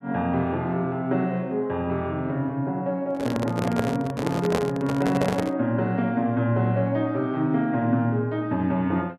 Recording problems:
microphone handling noise; from 3 to 5.5 s; peak +4 dB vs average level

